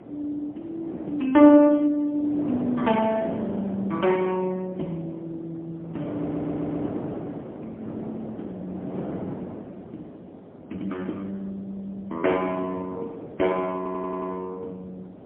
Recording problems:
phone line; 190 Hz to 3.3 kHz, AMR-NB, then MP3
wind on the microphone; below 530 Hz, SNR 12 dB
stutter; at 6 s and at 14 s

